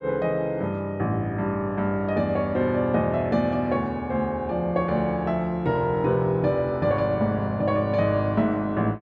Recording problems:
none

